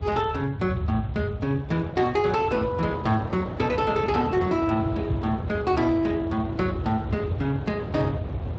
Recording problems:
lossy codec; Speex, log-spectral distance 3 dB
low-frequency rumble; below 120 Hz, SNR 8 dB
wind on the microphone; below 680 Hz, SNR 11 dB

